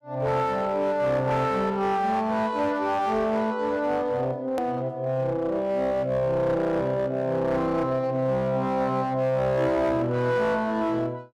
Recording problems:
distortion; hard clipping, uneven, signal-to-distortion ratio 11 dB
edit click; at 4.5 s

